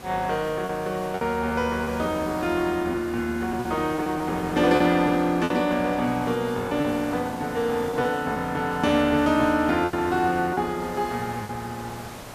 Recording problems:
hiss; SNR 16 dB
packet loss; 7% of the sound replaced, filled with repeated pitch periods

